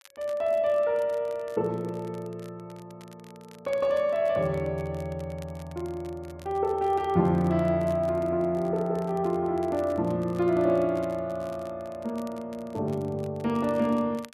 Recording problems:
crackling; vinyl, SNR 27 dB

